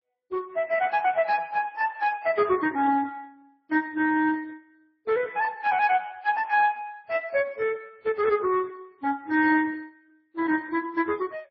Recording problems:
lossy codec; Speex, then MP3, log-spectral distance 3 dB, nothing above 5.3 kHz

